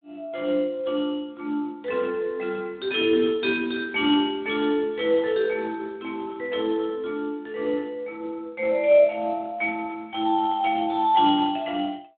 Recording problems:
telephone audio; 220 Hz to 3.6 kHz, Speex

